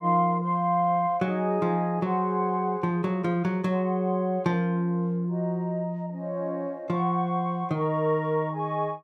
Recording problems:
none

